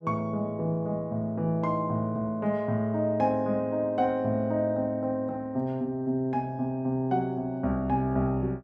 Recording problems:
none

